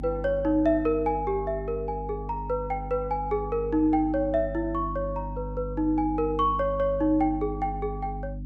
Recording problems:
hum; 50 Hz, harmonics up to 300 Hz, SNR 10 dB

